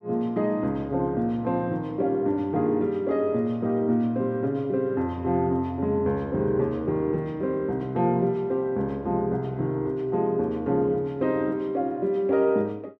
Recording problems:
none

